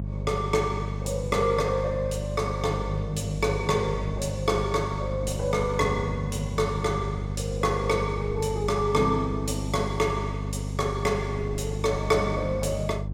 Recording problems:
electrical hum; 50 Hz, harmonics up to 400 Hz, SNR 5 dB
wind noise; below 380 Hz, SNR 18 dB

